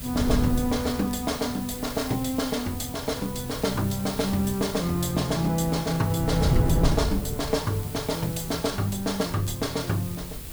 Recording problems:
background hiss; slope +2 dB per octave, SNR 13 dB
wind on the microphone; below 170 Hz, SNR 7 dB
crackle; vinyl, SNR 27 dB

